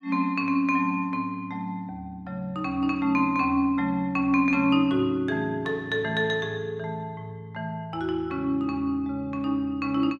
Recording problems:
none

